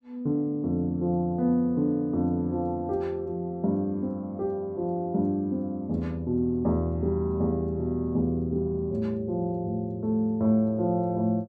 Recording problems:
none

